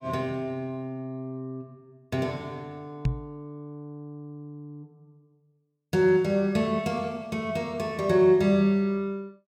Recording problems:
knock on the microphone; at 3 s; peak +4 dB vs average level

